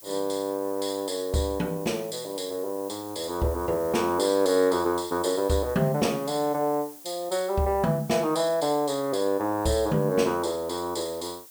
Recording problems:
hiss; SNR 18 dB

